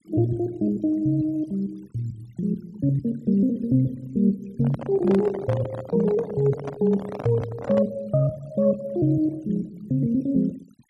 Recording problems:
denoising artefacts; signal-to-artefact ratio 24 dB
microphone handling noise; from 4.5 to 8 s; peak -4 dB vs average level

